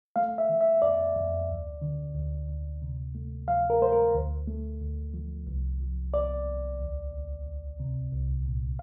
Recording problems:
none

